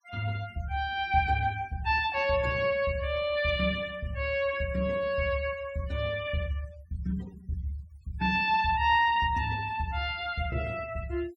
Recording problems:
denoising artefacts; signal-to-artefact ratio 22 dB

